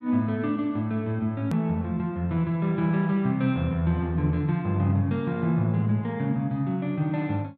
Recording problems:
edit click; at 1.5 s

